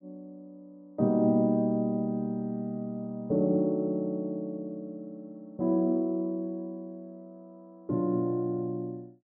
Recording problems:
none

